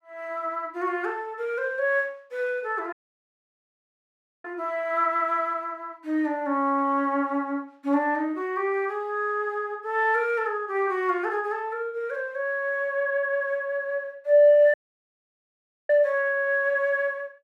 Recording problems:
audio cutting out; at 3 s for 1.5 s and at 15 s for 1 s

